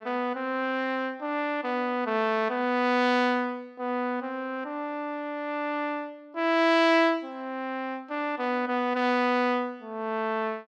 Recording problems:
none

